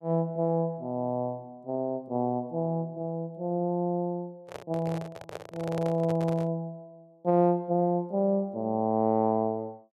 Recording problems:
microphone handling noise; from 4.5 to 6.5 s; peak -5 dB vs average level

